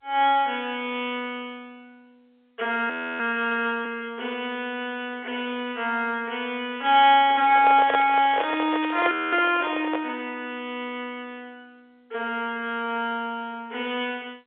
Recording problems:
phone line; 320 Hz to 3.6 kHz, G.711
frozen audio; at 3 s and at 9 s
microphone handling noise; from 7.5 to 10 s; peak +2 dB vs average level
crackling; from 8 to 9 s; loose cable, SNR 19 dB

